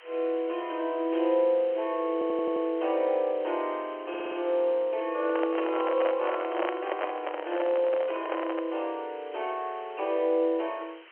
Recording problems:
telephone audio; 300 Hz to 3.3 kHz, G.711
background hiss; SNR 22 dB
audio stuttering; at 2 s and at 4 s
microphone handling noise; from 5 to 8.5 s; peak +1 dB vs average level

